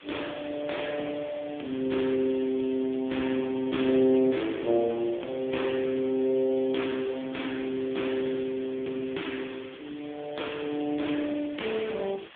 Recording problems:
telephone audio; 190 Hz to 3.5 kHz, AMR-NB
hiss; SNR 19 dB

